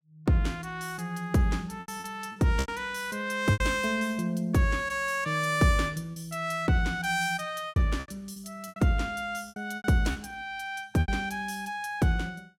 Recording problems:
lost packets; 8% of the sound replaced, filled with repeated pitch periods

